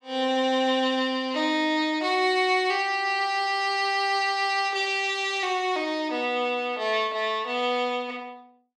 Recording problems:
none

